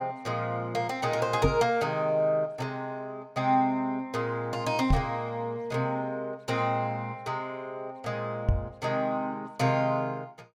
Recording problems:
microphone bump; at 1.5 s, at 5 s and at 8.5 s; peak +7 dB vs average level

